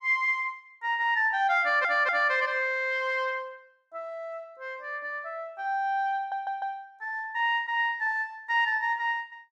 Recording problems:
stutter; at 1.5 s and at 6 s

